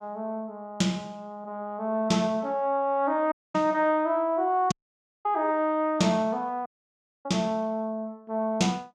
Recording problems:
audio cutting out; at 3.5 s, at 4.5 s for 0.5 s and at 6.5 s for 0.5 s

